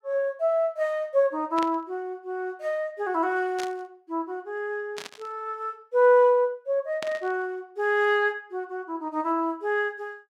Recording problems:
burst of static; 4 times, first at 1.5 s; peak -5 dB vs average level

